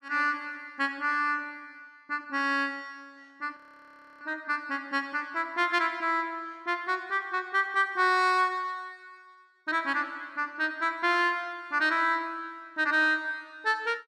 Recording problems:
audio freezing; at 3.5 s for 0.5 s

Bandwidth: 14 kHz